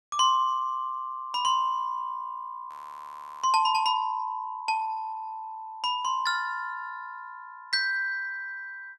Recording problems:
frozen audio; at 2.5 s for 0.5 s

